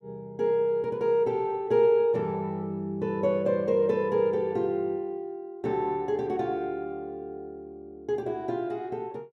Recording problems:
none

